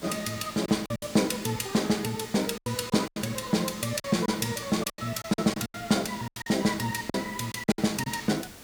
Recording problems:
hiss; slope -2 dB per octave, SNR 17 dB
packet loss; 11% of the sound replaced, filled with silence

